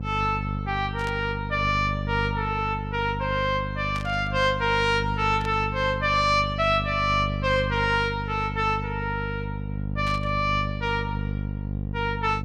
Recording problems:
mains hum; 50 Hz, harmonics up to 550 Hz, SNR 6 dB
static burst; 4 times, first at 1 s; peak -9 dB vs average level

